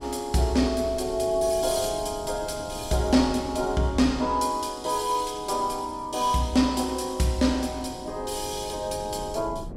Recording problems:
wind on the microphone; below 300 Hz, SNR 18 dB

